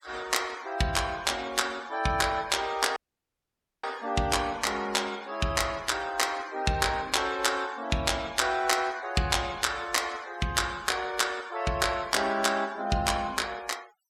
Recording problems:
denoising artefacts; signal-to-artefact ratio 20 dB
dropout; at 3 s for 1 s

